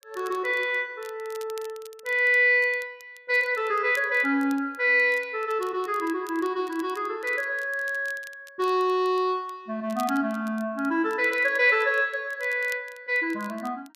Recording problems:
crackling; vinyl, SNR 25 dB

